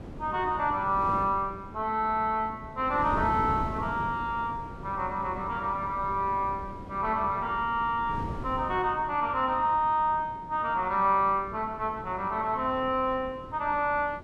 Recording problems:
wind on the microphone; below 360 Hz, SNR 13 dB

